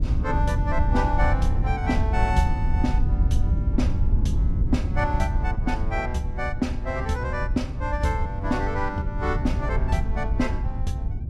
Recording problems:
wind noise; below 88 Hz, SNR -2 dB

